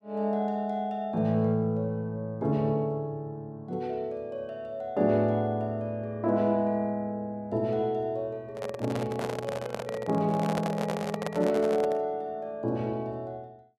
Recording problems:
microphone handling noise; from 8.5 to 12 s; peak +1 dB vs average level

